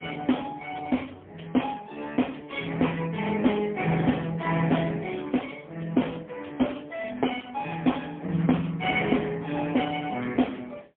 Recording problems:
phone line; 110 Hz to 3.3 kHz, AMR-NB, then MP3

